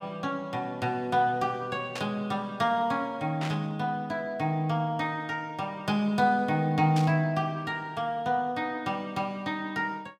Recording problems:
static burst; at 2 s, at 3.5 s and at 7 s; peak -4 dB vs average level

